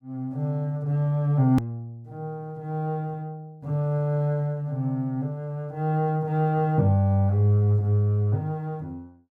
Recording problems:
hard cut with a click; at 1.5 s

